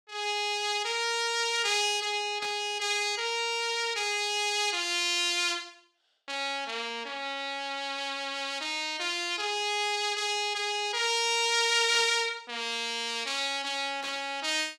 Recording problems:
burst of static; at 2.5 s, at 12 s and at 14 s; peak -10 dB vs average level

